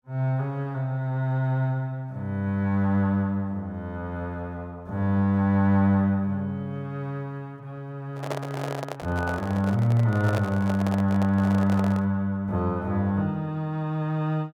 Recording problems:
microphone handling noise; from 8 to 12 s; peak -1 dB vs average level

